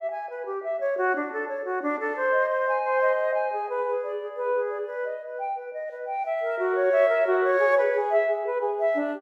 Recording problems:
none

